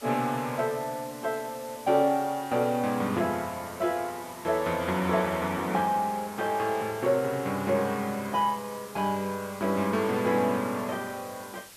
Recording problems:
hiss; slope 0 dB per octave, SNR 18 dB

